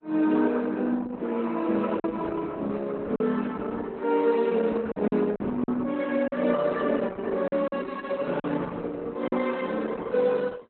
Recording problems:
lossy codec; Opus, log-spectral distance 3 dB, nothing above 4 kHz
lost packets; 4% of the sound replaced, filled with silence

